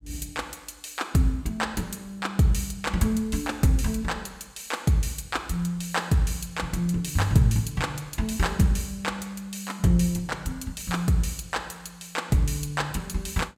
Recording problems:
none

